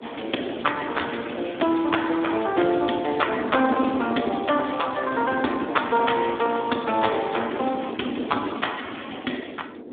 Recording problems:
telephone audio; 190 Hz to 3.6 kHz, Speex
wind noise; below 440 Hz, SNR 9 dB

